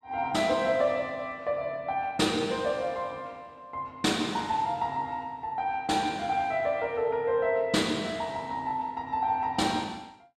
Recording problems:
none

